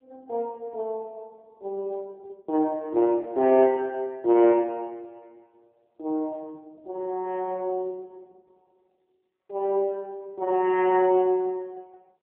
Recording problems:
phone line; 280 Hz to 3.1 kHz, AMR-NB

